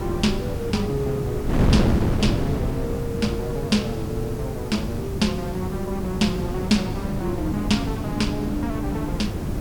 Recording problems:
hum; 50 Hz, harmonics up to 400 Hz, SNR 11 dB
hiss; slope 0 dB per octave, SNR 19 dB
wind on the microphone; below 290 Hz, SNR 1 dB

